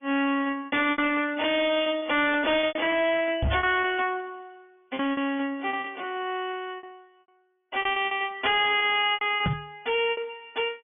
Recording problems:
treble missing; nothing above 2.9 kHz
lossy compression; AAC, log-spectral distance 2 dB
distorted audio; hard clipping, uneven, signal-to-distortion ratio 9 dB
packet loss; 13% of the sound replaced, filled with repeated pitch periods
knock on the microphone; at 3.5 s and at 9.5 s; peak +2 dB vs average level

